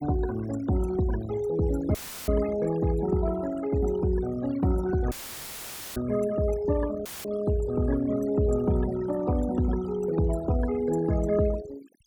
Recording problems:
denoising artefacts; signal-to-artefact ratio 15 dB
dropout; at 2 s, at 5 s for 1 s and at 7 s; filled with static

